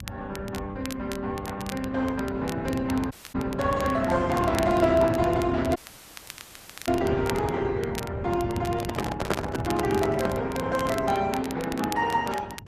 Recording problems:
lossy compression; Opus, log-spectral distance 3 dB, nothing above 14.1 kHz
low-frequency rumble; below 140 Hz, SNR 7 dB
crackle; vinyl, SNR 15 dB
audio cutting out; at 3 s and at 6 s for 1 s
microphone handling noise; from 9 to 10 s; peak +2 dB vs average level

